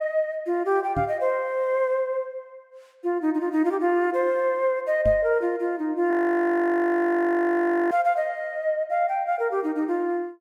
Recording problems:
microphone thump; at 1 s and at 5 s; peak -2 dB vs average level
frozen audio; at 6 s for 2 s

